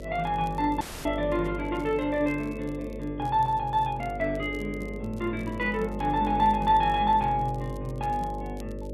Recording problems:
electrical hum; 50 Hz, harmonics up to 600 Hz, SNR 10 dB
crackle; vinyl, SNR 30 dB
audio cutting out; at 1 s

